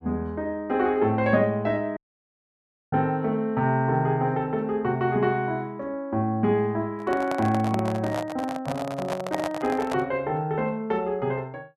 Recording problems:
dropout; at 2 s for 1 s
handling noise; from 7 to 10 s; peak +2 dB vs average level

